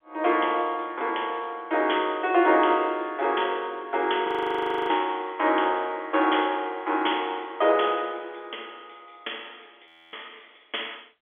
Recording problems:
phone line; 280 Hz to 3.4 kHz, G.711
frozen audio; at 4.5 s for 0.5 s and at 10 s

